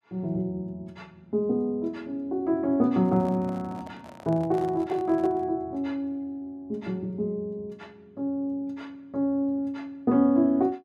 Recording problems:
microphone handling noise; from 3 to 5.5 s; peak -11 dB vs average level

